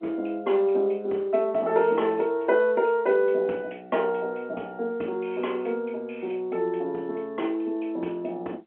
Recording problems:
telephone audio; 280 Hz to 3.2 kHz, G.711

